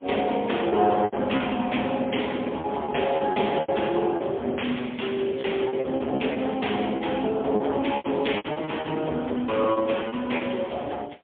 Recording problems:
phone line; 280 Hz to 3.5 kHz, AMR-NB, then MP3
distortion; hard clipping, signal-to-distortion ratio 13 dB
lost packets; 10% of the sound replaced, filled with repeated pitch periods

